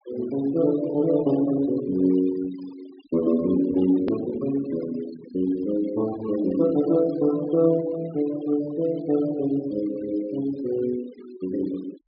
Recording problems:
treble cut off; nothing above 5.5 kHz
noise reduction artefacts; signal-to-artefact ratio 19 dB
edit click; at 4 s

